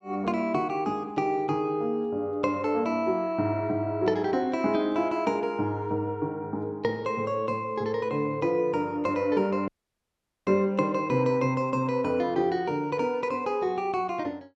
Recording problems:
audio cutting out; at 9.5 s for 1 s

